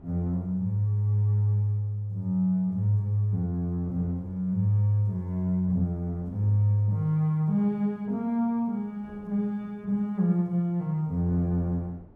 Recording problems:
wind on the microphone; below 360 Hz, SNR 27 dB

